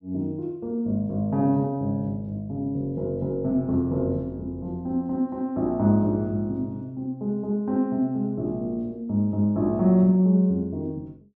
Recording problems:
none

